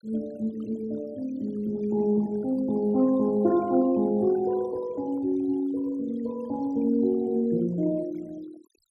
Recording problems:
denoising artefacts; signal-to-artefact ratio 24 dB

